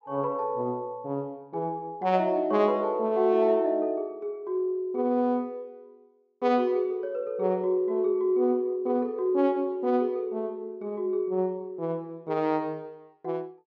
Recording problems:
treble cut off; nothing above 8 kHz

